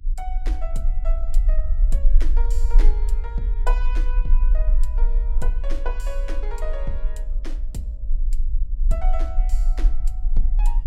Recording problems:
hum; 50 Hz, harmonics up to 300 Hz, SNR 17 dB
low-frequency rumble; below 38 Hz, strongest tone 28 Hz, SNR -12 dB

